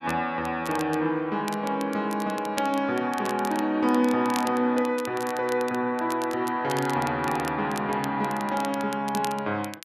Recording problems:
crackling; vinyl, SNR 16 dB

